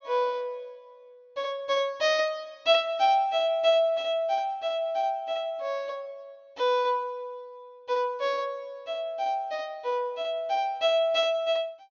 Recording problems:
low-pass filter; nothing above 6.9 kHz

